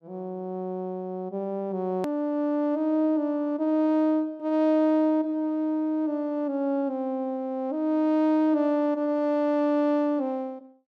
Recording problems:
hard cut with a click; at 2 s

